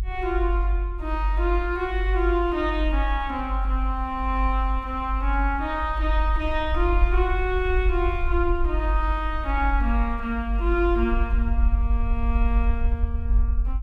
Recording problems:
rumble; below 52 Hz, strongest tone 48 Hz, SNR 0 dB

